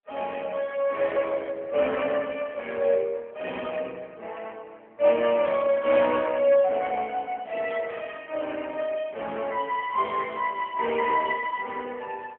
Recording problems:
telephone audio; 340 Hz to 2.9 kHz, AMR-NB

